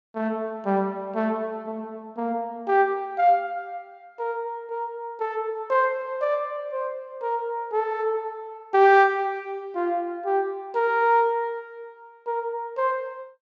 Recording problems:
treble cut off; nothing above 8 kHz

